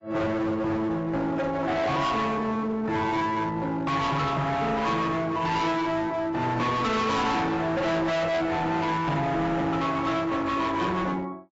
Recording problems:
codec artefacts; AAC, log-spectral distance 2 dB, nothing above 7.6 kHz
distortion; hard clipping, signal-to-distortion ratio 7 dB

